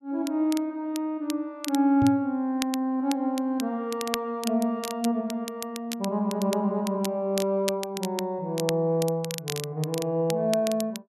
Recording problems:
crackling; vinyl, SNR 11 dB
microphone bump; at 2 s; peak +3 dB vs average level

